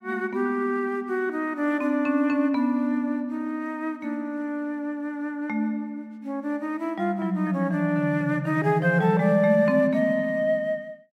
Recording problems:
none

